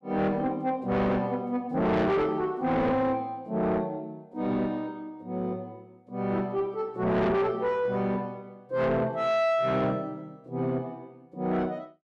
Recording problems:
distortion; soft clipping, signal-to-distortion ratio 7 dB

